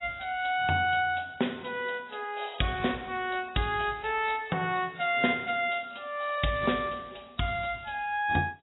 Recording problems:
codec artefacts; AAC, log-spectral distance 7 dB, nothing above 3.8 kHz

